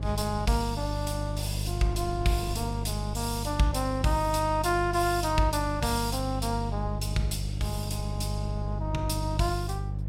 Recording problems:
mains hum; 50 Hz, harmonics up to 350 Hz, SNR 3 dB
wind on the microphone; below 220 Hz, SNR 16 dB

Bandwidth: 16 kHz